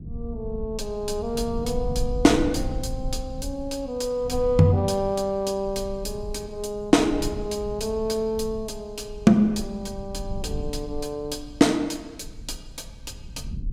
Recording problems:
rumble; below 88 Hz, SNR 12 dB

